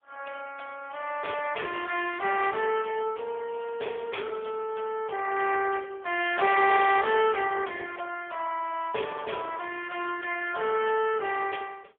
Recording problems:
telephone audio; 370 Hz to 2.9 kHz, AMR-NB, then MP3

